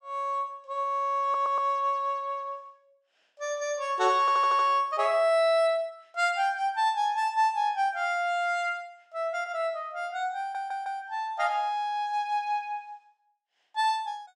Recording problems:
stutter; at 1 s, at 4 s and at 10 s

